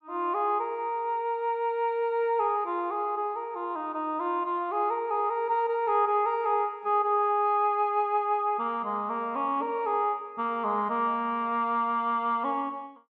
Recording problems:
none

